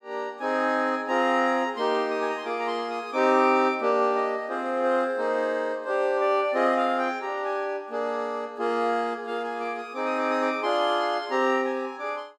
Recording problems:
none

